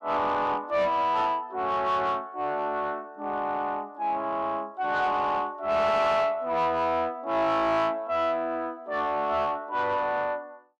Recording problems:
distortion; soft clipping, signal-to-distortion ratio 10 dB

